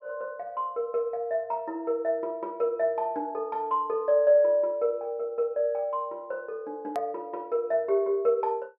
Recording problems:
low-pass filter; nothing above 5.5 kHz
edit click; at 7 s

